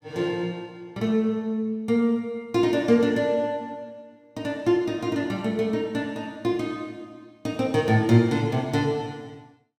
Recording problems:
none

